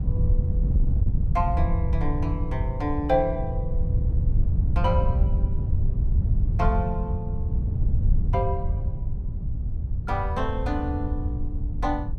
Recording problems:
wind noise; below 98 Hz, SNR -3 dB

